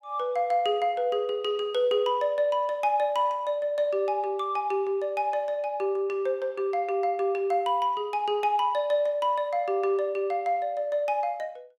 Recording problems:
none

